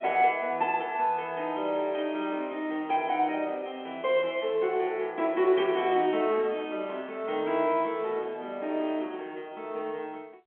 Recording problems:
phone line; 300 Hz to 3.3 kHz, G.711

